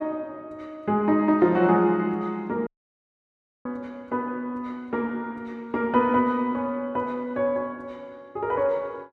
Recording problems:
audio cutting out; at 2.5 s for 1 s

